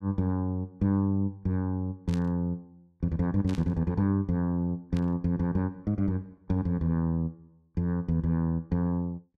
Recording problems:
static burst; at 2 s, at 3.5 s and at 5 s; peak -11 dB vs average level

